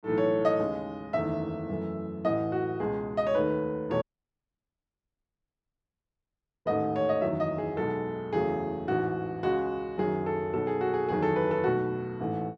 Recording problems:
dropout; at 4 s for 2.5 s

